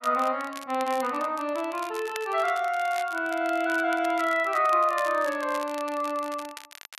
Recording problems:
crackle; vinyl, SNR 17 dB

